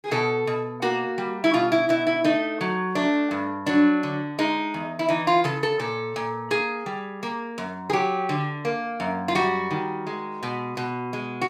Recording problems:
none

